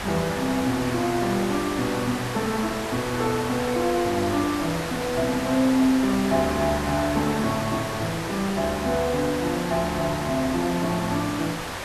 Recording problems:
hiss; SNR 6 dB

